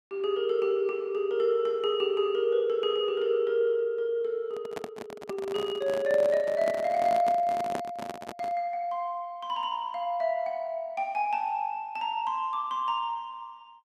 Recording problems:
handling noise; from 4.5 to 8.5 s; peak 0 dB vs average level

